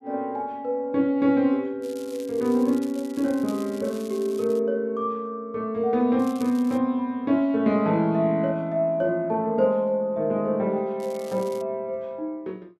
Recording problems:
crackling; from 2 to 4.5 s, at 6 s and at 11 s; loose cable, SNR 23 dB

